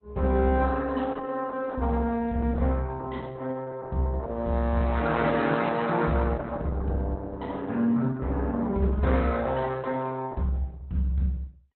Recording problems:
codec artefacts; Opus, log-spectral distance 3 dB, nothing above 4 kHz

